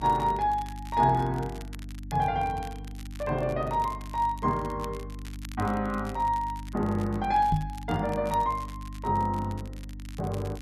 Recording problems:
hum; 50 Hz, harmonics up to 300 Hz, SNR 12 dB
crackling; vinyl, SNR 22 dB
knock on the microphone; at 7.5 s; peak +5 dB vs average level

